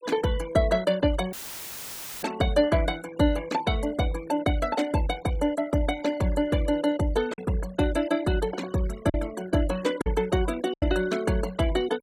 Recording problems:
denoising artefacts; signal-to-artefact ratio 15 dB
lost packets; 1.8% of the sound replaced, filled with silence
audio cutting out; at 1.5 s for 1 s; filled with static

